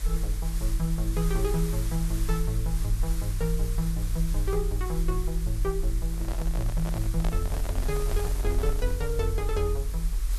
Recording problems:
hiss; slope -1 dB per octave, SNR 10 dB
low-frequency rumble; below 46 Hz, strongest tone 44 Hz, SNR -1 dB
handling noise; from 6 to 9 s; peak 0 dB vs average level

